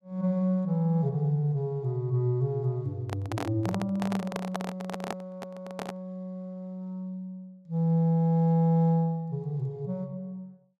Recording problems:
handling noise; from 3 to 6 s; peak -1 dB vs average level

